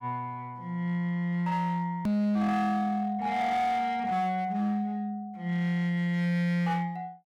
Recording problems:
distortion; hard clipping, signal-to-distortion ratio 12 dB
click at an edit; at 2 s

